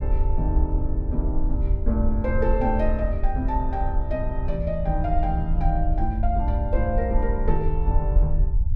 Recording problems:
low-frequency rumble; below 60 Hz, SNR -2 dB

